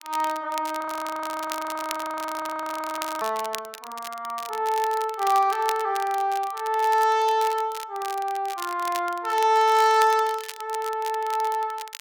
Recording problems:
crackling; vinyl, SNR 14 dB
audio freezing; at 1 s for 2.5 s

